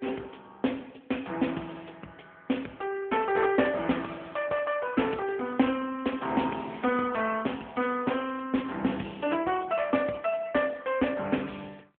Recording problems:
phone line; 170 Hz to 3.4 kHz, AMR-NB
crackling; from 5 to 8.5 s; loose cable, SNR 27 dB

